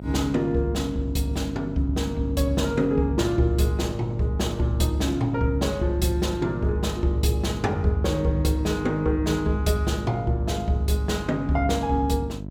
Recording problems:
electrical hum; 50 Hz, harmonics up to 700 Hz, SNR 10 dB

